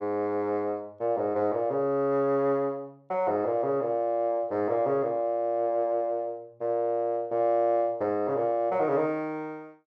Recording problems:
none

